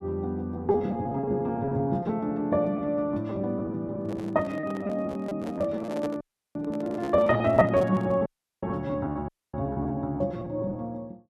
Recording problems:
lost packets; 15% of the sound replaced, filled with repeated pitch periods
microphone handling noise; from 4 to 8.5 s; peak -5 dB vs average level
audio cutting out; at 6 s, at 8.5 s and at 9.5 s

